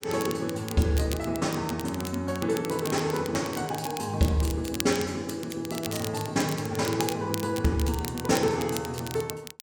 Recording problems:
crackle; vinyl, SNR 11 dB

